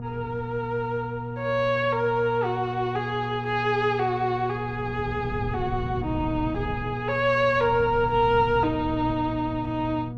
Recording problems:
hum; 60 Hz, harmonics up to 960 Hz, SNR 9 dB
wind on the microphone; below 150 Hz, SNR 12 dB

